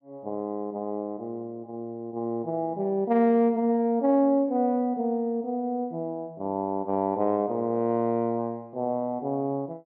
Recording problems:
none

